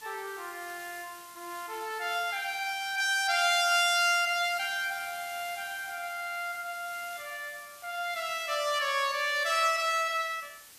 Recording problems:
hiss; slope +1 dB per octave, SNR 18 dB

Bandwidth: 14.5 kHz